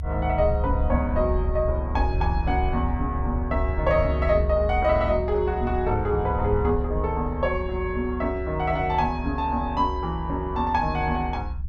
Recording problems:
low-frequency rumble; below 70 Hz, strongest tone 68 Hz, SNR 4 dB

